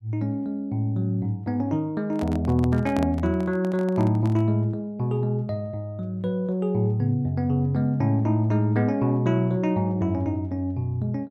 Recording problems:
microphone handling noise; from 2 to 4.5 s; peak -4 dB vs average level

